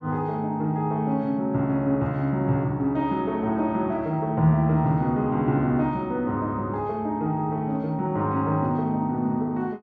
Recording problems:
none

